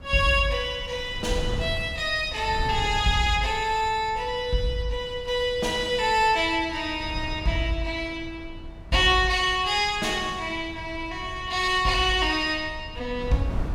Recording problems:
wind on the microphone; below 120 Hz, SNR 14 dB

